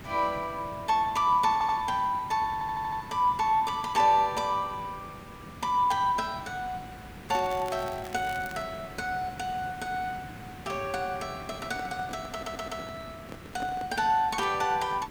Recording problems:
background hiss; SNR 16 dB
stutter; at 1.5 s, at 2.5 s and at 12 s
crackling; from 7.5 to 8.5 s; loose cable, SNR 19 dB
handling noise; from 11 to 14 s; peak -7 dB vs average level

